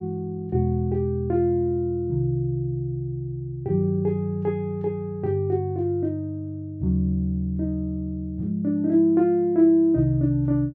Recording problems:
none

